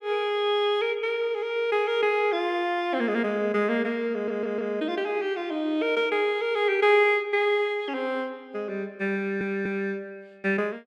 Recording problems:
audio stuttering; at 4 s and at 9 s

